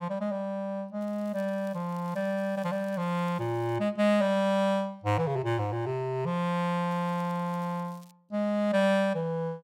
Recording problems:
crackle; from 1 to 4 s and from 7 to 8 s; loose cable, SNR 29 dB

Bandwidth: 16 kHz